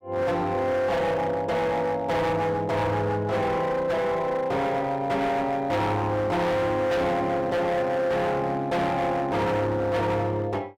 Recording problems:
distortion; hard clipping, signal-to-distortion ratio 7 dB

